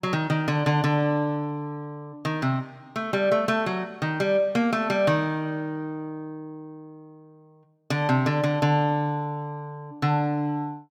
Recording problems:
none

